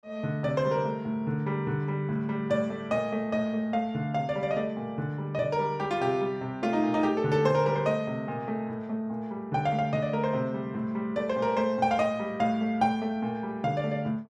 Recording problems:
none

